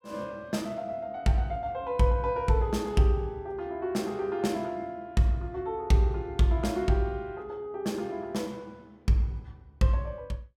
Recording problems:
none

